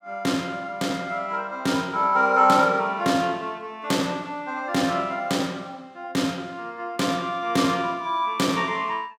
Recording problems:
none

